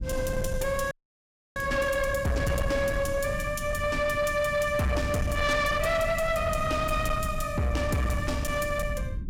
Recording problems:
distorted audio; soft clipping, signal-to-distortion ratio 10 dB
rumble; below 150 Hz, SNR 8 dB
audio freezing; at 1 s for 0.5 s

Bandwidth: 16.5 kHz